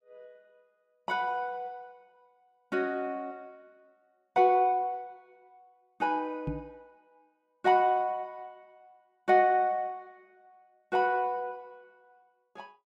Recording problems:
microphone bump; at 6.5 s; peak -1 dB vs average level

